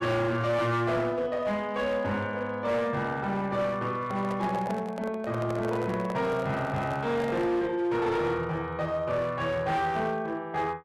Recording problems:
distorted audio; hard clipping, uneven, signal-to-distortion ratio 11 dB
microphone handling noise; from 4 to 7.5 s; peak -4 dB vs average level

